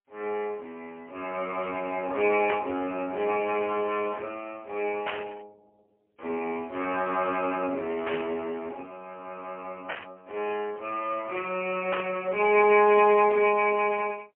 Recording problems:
telephone audio; 280 Hz to 3 kHz, AMR-NB, then MP3
static burst; 5 times, first at 2.5 s; peak -1 dB vs average level

